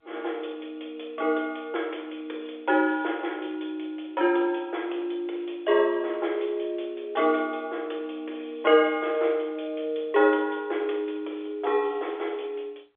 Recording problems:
telephone audio; 320 Hz to 3.6 kHz, G.711

